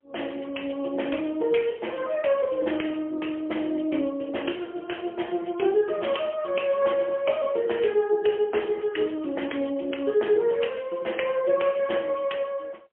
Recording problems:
telephone audio; 260 Hz to 3.2 kHz, AMR-NB, then MP3

